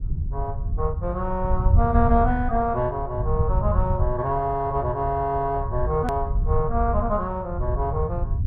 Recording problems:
treble cut off; nothing above 5.6 kHz
lossy codec; MP2, log-spectral distance 2 dB
rumble; below 94 Hz, SNR 2 dB
hard cut with a click; at 6 s

